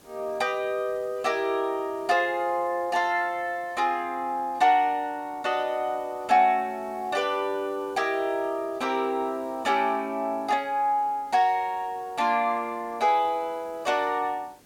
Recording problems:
background hiss; slope -4 dB per octave, SNR 28 dB

